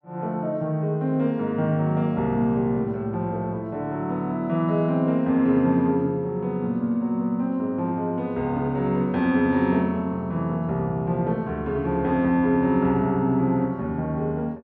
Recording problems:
none

